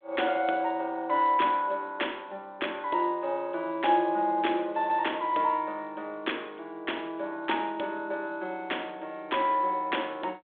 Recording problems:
phone line; 280 Hz to 3.5 kHz, G.726

